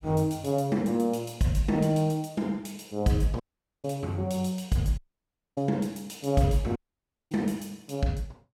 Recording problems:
dropout; at 3.5 s, at 5 s for 0.5 s and at 7 s for 0.5 s

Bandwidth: 16.5 kHz